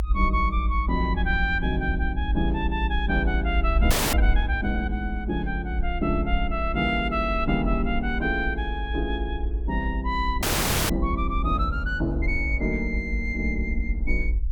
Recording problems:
low-frequency rumble; below 58 Hz, SNR 2 dB
audio freezing; at 4 s and at 10 s

